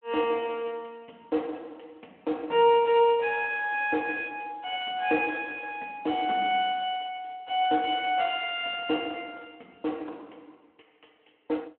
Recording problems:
phone line; 260 Hz to 3.3 kHz, Speex

